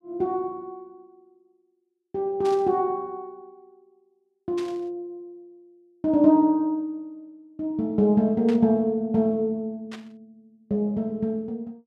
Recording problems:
burst of static; 4 times, first at 2.5 s; peak -11 dB vs average level

